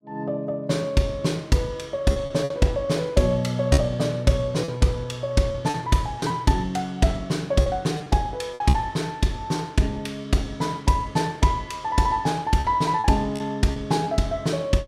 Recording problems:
lost packets; 5% of the sound replaced, filled with repeated pitch periods

